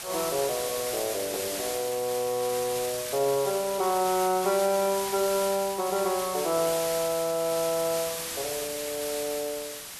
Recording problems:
background hiss; slope +1 dB per octave, SNR 5 dB

